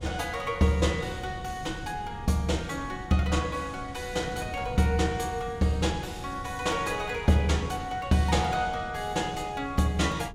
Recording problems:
wind on the microphone; below 170 Hz, SNR 14 dB

